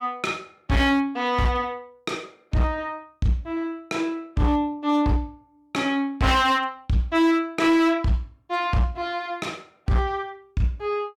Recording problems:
distorted audio; hard clipping, signal-to-distortion ratio 12 dB

